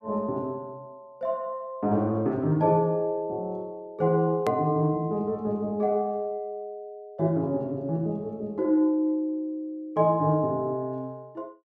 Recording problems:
edit click; at 4.5 s

